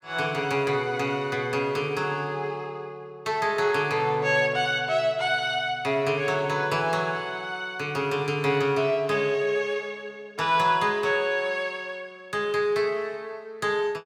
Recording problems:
none

